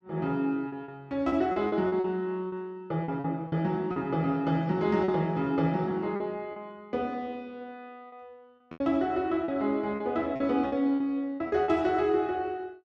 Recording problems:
lost packets; 8% of the sound replaced, filled with repeated pitch periods

